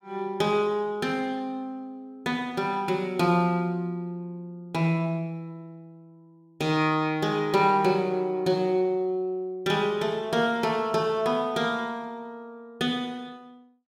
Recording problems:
none

